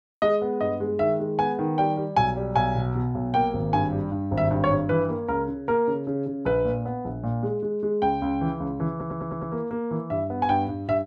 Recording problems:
audio stuttering; at 9 s

